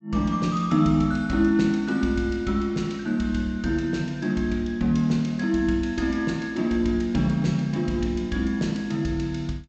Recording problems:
low-pass filter; nothing above 8 kHz

